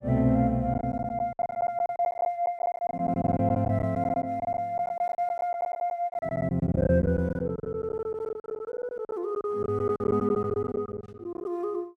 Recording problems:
lost packets; 18% of the sound replaced, filled with silence

